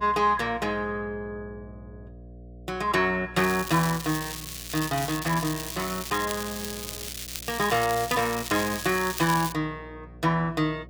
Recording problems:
hum; 60 Hz, harmonics up to 720 Hz, SNR 19 dB
crackle; from 3.5 to 9.5 s; loose cable, SNR 7 dB

